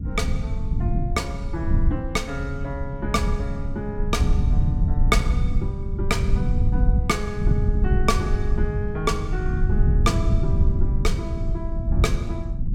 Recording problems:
rumble; below 100 Hz, SNR -5 dB

